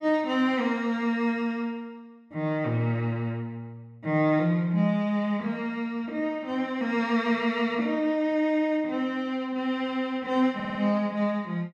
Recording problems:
audio stuttering; at 11 s

